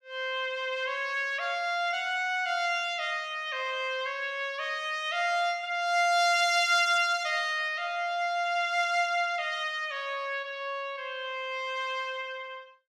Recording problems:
none

